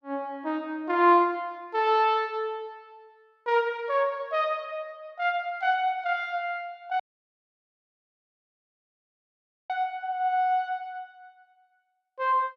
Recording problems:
dropout; at 7 s for 2.5 s

